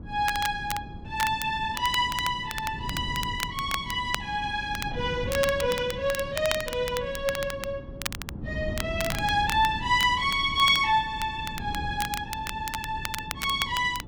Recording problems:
wind noise; below 220 Hz, SNR 12 dB
crackle; vinyl, SNR 10 dB

